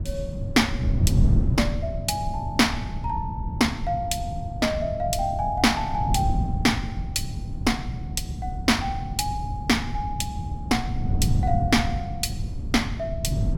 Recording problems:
wind noise; below 140 Hz, SNR 3 dB

